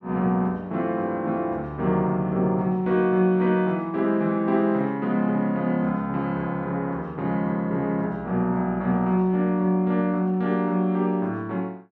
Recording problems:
none

